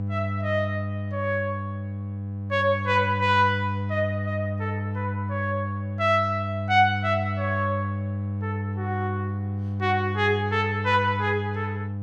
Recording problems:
hum; 50 Hz, harmonics up to 500 Hz, SNR 4 dB

